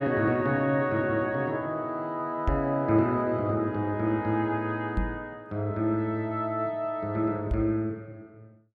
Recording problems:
microphone thump; at 2.5 s, at 5 s and at 7.5 s; peak +3 dB vs average level

